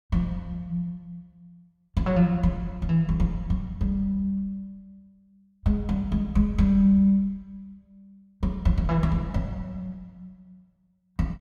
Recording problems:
none

